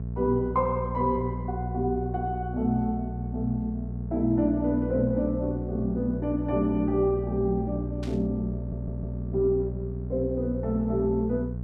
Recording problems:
hum; 60 Hz, harmonics up to 480 Hz, SNR 5 dB
static burst; at 8 s; peak -12 dB vs average level
stutter; at 8.5 s

